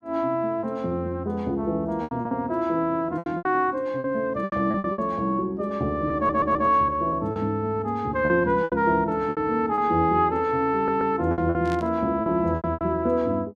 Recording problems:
lost packets; 10% of the sound replaced, filled with repeated pitch periods
audio stuttering; at 6 s and at 11 s
burst of static; at 12 s; peak -12 dB vs average level

